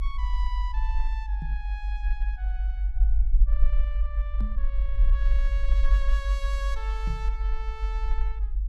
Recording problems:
rumble; below 48 Hz, SNR -13 dB
microphone bump; at 1.5 s, at 4.5 s and at 7 s; peak +9 dB vs average level

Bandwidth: 15.5 kHz